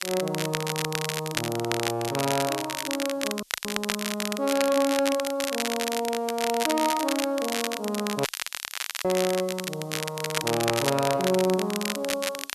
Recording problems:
background hiss; SNR 26 dB
crackling; vinyl, SNR 3 dB
dropout; at 3.5 s and at 8.5 s for 1 s

